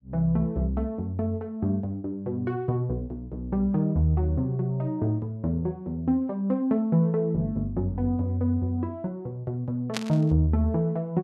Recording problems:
static burst; at 10 s; peak +1 dB vs average level

